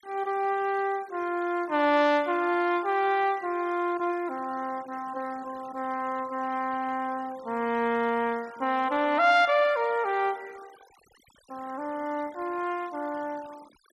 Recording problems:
denoising artefacts; signal-to-artefact ratio 23 dB

